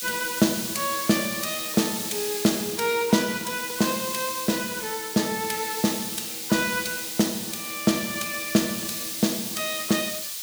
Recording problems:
hiss; slope +5 dB per octave, SNR 4 dB

